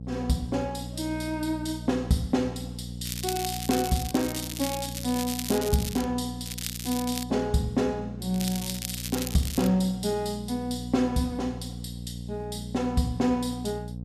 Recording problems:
hum; 60 Hz, harmonics up to 540 Hz, SNR 9 dB
crackle; from 3 to 6 s, at 6.5 s and from 8.5 to 9.5 s; loose cable, SNR 6 dB

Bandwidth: 14.5 kHz